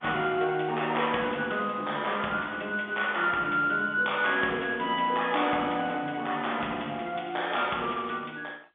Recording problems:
phone line; 220 Hz to 3.6 kHz, G.711

